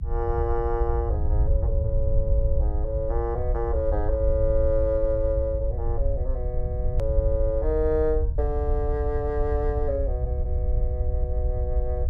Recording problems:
low-frequency rumble; below 68 Hz, SNR -1 dB
edit click; at 7 s

